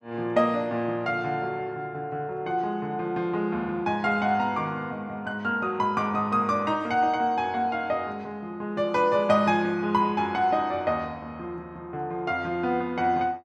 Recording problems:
none

